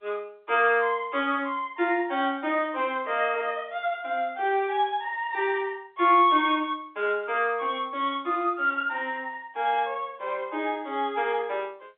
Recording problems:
telephone audio; 280 Hz to 3.6 kHz, G.711

